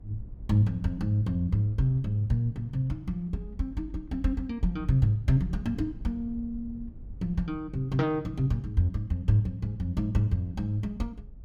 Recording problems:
rumble; below 84 Hz, SNR 18 dB

